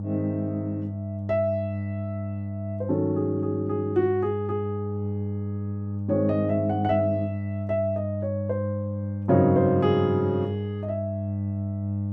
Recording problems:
electrical hum; 50 Hz, harmonics up to 600 Hz, SNR 5 dB

